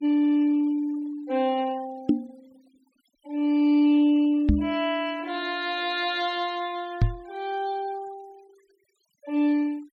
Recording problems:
denoising artefacts; signal-to-artefact ratio 27 dB
microphone bump; at 2 s, at 4.5 s and at 7 s; peak +8 dB vs average level

